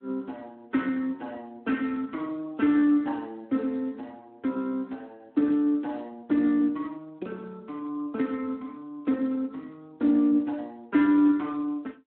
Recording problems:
telephone audio; 260 Hz to 3.4 kHz, Speex

